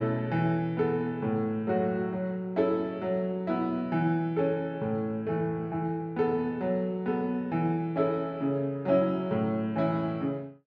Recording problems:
none

